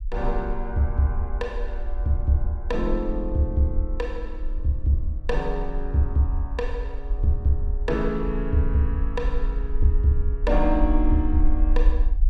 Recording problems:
rumble; below 44 Hz, SNR 3 dB

